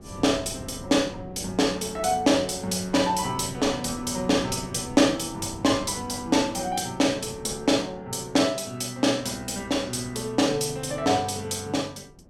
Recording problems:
wind noise; below 330 Hz, SNR 18 dB

